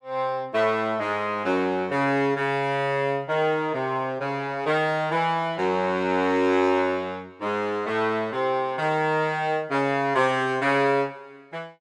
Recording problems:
none

